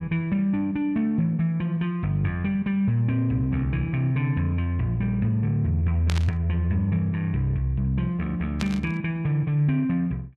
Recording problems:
static burst; at 6 s and at 8.5 s; peak -3 dB vs average level

